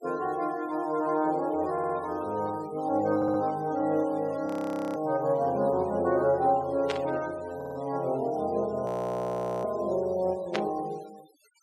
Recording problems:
noise reduction artefacts; signal-to-artefact ratio 24 dB
stutter; at 1.5 s, at 3 s and at 7.5 s
frozen audio; at 4.5 s for 0.5 s and at 9 s for 1 s
static burst; at 7 s and at 11 s; peak 0 dB vs average level

